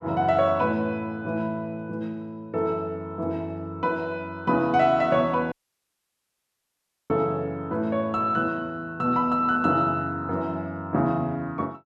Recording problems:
audio cutting out; at 5.5 s for 1.5 s

